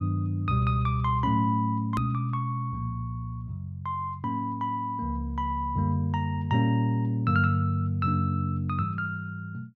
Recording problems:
click at an edit; at 2 s

